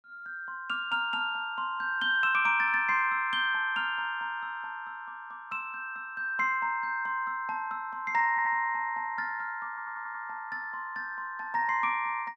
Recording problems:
audio stuttering; at 8.5 s and at 9.5 s

